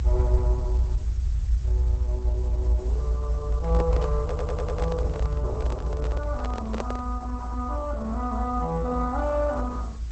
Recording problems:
lossy codec; Opus, log-spectral distance 2 dB
background hiss; slope -1 dB per octave, SNR 23 dB
low-frequency rumble; below 64 Hz, strongest tone 58 Hz, SNR -2 dB
handling noise; from 3.5 to 7 s; peak +3 dB vs average level
audio stuttering; at 4 s

